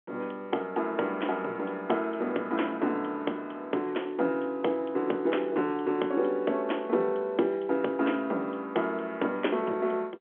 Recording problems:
phone line; 240 Hz to 3.3 kHz, G.711

